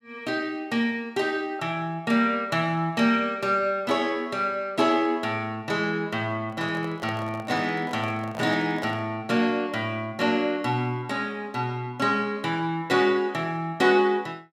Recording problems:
microphone handling noise; from 6.5 to 9 s; peak -8 dB vs average level

